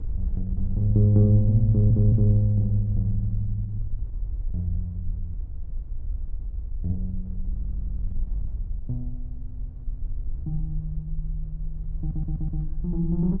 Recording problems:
wind on the microphone; below 56 Hz, SNR 9 dB
stutter; at 1.5 s, at 7.5 s and at 12 s

